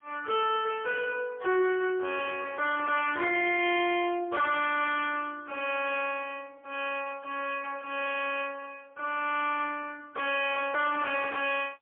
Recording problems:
telephone audio; 320 Hz to 3.4 kHz, AMR-NB, then MP3
distortion; soft clipping, signal-to-distortion ratio 7 dB

